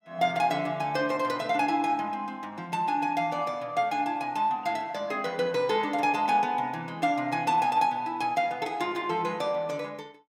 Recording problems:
none

